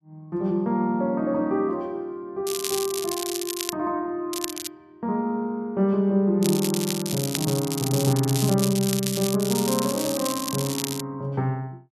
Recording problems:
crackling; from 2.5 to 4 s, at 4.5 s and from 6.5 to 11 s; loose cable, SNR 5 dB

